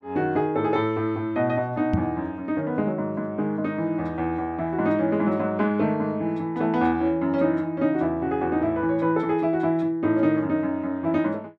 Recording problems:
microphone thump; at 2 s; peak +4 dB vs average level

